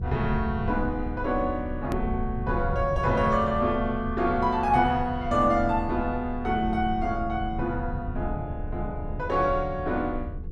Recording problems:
hum; 50 Hz, harmonics up to 500 Hz, SNR 23 dB
rumble; below 100 Hz, strongest tone 26 Hz, SNR 8 dB
click at an edit; at 2 s

